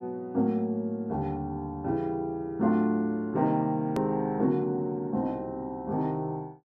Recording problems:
click at an edit; at 4 s

